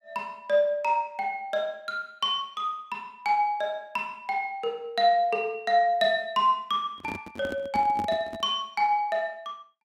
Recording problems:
microphone handling noise; from 7 to 8.5 s; peak -4 dB vs average level

